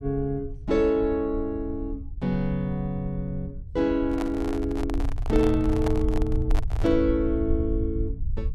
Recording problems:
rumble; below 72 Hz, SNR 6 dB
microphone handling noise; from 4 to 7 s; peak -3 dB vs average level

